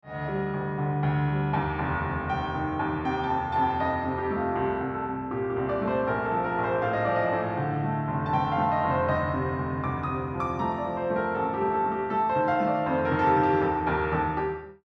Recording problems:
none

